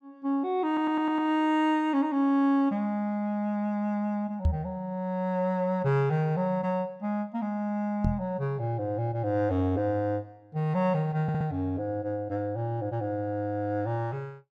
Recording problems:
stutter; at 0.5 s and at 11 s
microphone bump; at 4.5 s and at 8 s; peak +6 dB vs average level

